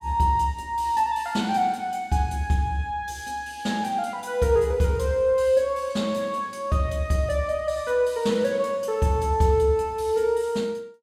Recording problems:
none

